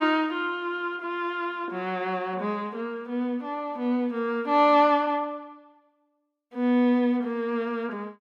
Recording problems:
none

